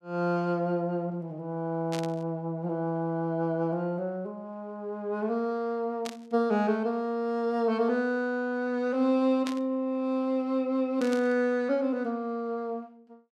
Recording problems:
burst of static; 4 times, first at 2 s; peak -5 dB vs average level

